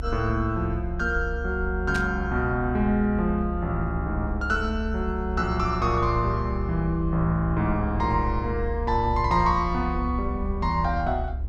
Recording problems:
rumble; below 68 Hz, strongest tone 66 Hz, SNR 6 dB
burst of static; at 2 s; peak -5 dB vs average level

